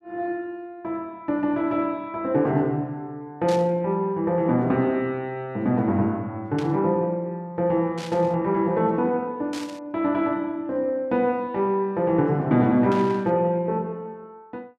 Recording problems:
static burst; 5 times, first at 3.5 s; peak -9 dB vs average level

